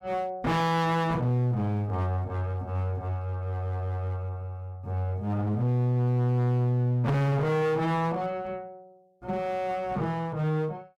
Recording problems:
distorted audio; hard clipping, uneven, signal-to-distortion ratio 6 dB

